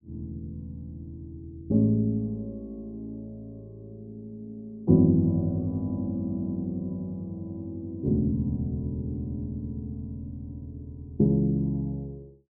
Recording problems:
none

